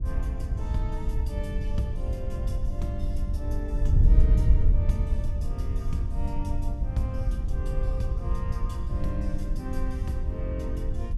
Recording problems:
wind on the microphone; below 74 Hz, SNR -8 dB

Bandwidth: 15 kHz